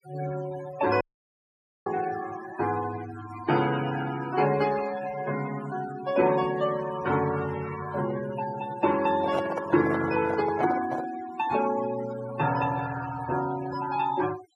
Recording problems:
noise reduction artefacts; signal-to-artefact ratio 12 dB
dropout; at 1 s for 1 s
handling noise; from 9 to 11 s; peak +1 dB vs average level

